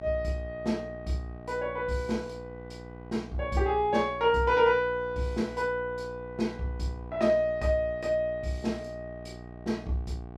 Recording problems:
hum; 60 Hz, harmonics up to 1.2 kHz, SNR 15 dB

